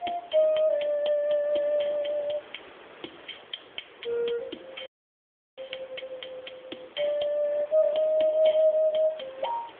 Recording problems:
phone line; 300 Hz to 3.5 kHz, AMR-NB
hiss; SNR 23 dB
dropout; at 5 s for 0.5 s

